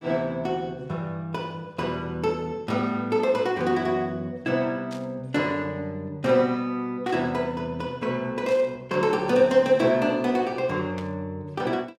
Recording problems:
burst of static; 4 times, first at 5 s; peak -11 dB vs average level

